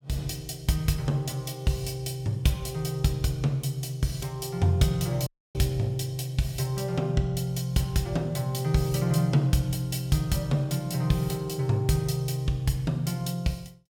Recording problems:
dropout; at 5.5 s

